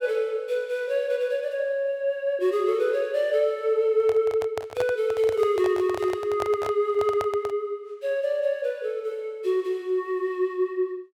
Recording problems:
microphone handling noise; from 4 to 7.5 s; peak -3 dB vs average level

